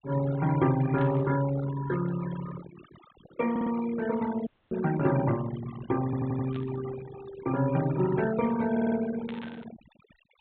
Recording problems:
treble cut off; nothing above 4 kHz
noise reduction artefacts; signal-to-artefact ratio 12 dB
static burst; at 1 s, at 6.5 s and at 9.5 s; peak -11 dB vs average level
audio stuttering; at 3.5 s, at 6 s and at 8.5 s
dropout; at 4.5 s

